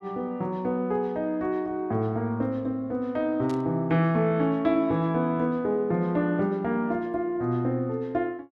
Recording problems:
static burst; at 3.5 s; peak -14 dB vs average level

